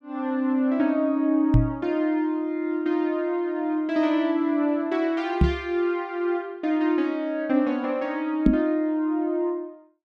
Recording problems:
microphone bump; at 1.5 s, at 5.5 s and at 8.5 s; peak +9 dB vs average level

